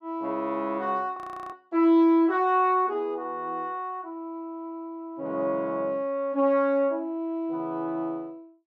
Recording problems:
audio freezing; at 1 s

